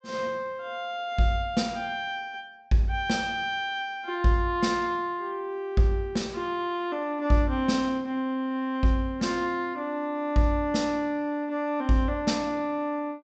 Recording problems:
low-pass filter; nothing above 8 kHz

